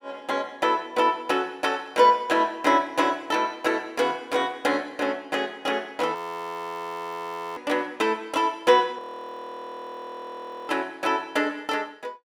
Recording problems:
frozen audio; at 6 s for 1.5 s and at 9 s for 1.5 s

